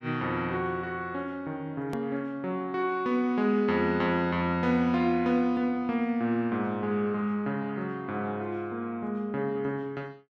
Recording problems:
click at an edit; at 2 s

